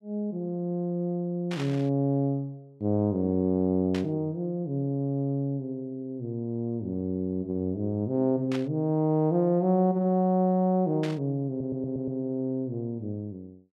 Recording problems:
static burst; 4 times, first at 1.5 s; peak -6 dB vs average level
stutter; at 11 s

